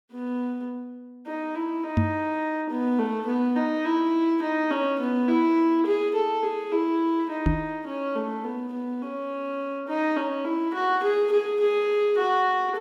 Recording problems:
knock on the microphone; at 2 s and at 7.5 s; peak +6 dB vs average level

